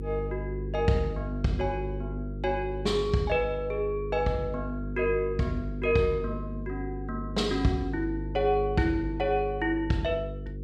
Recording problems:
mains hum; 50 Hz, harmonics up to 500 Hz, SNR 7 dB

